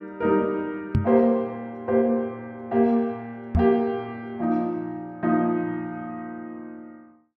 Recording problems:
microphone bump; at 1 s and at 3.5 s; peak +6 dB vs average level

